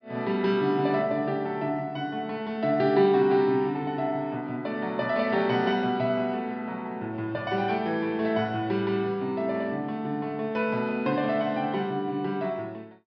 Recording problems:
treble cut off; nothing above 5.5 kHz

